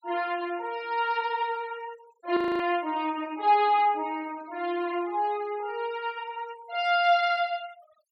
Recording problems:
denoising artefacts; signal-to-artefact ratio 24 dB
audio freezing; at 2.5 s

